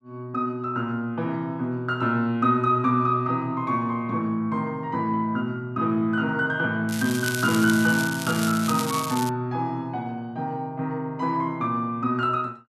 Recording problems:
crackle; from 7 to 9.5 s; loose cable, SNR 8 dB

